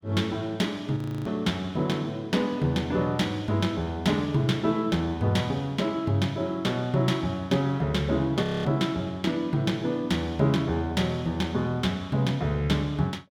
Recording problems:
audio freezing; at 1 s and at 8.5 s

